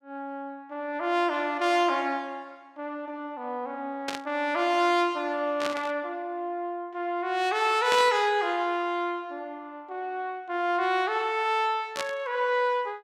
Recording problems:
static burst; 4 times, first at 4 s; peak +1 dB vs average level

